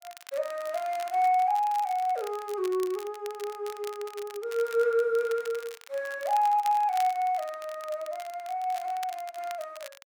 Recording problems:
crackle; vinyl, SNR 18 dB

